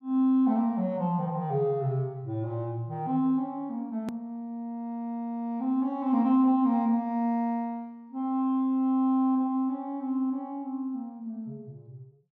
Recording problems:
edit click; at 4 s

